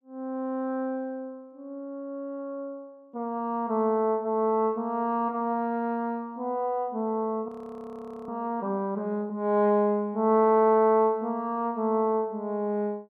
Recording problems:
frozen audio; at 7.5 s for 1 s

